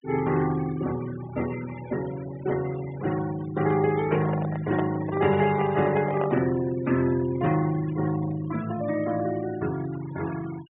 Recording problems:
treble cut off; nothing above 3.6 kHz
denoising artefacts; signal-to-artefact ratio 16 dB
microphone handling noise; from 4 to 6.5 s; peak -1 dB vs average level

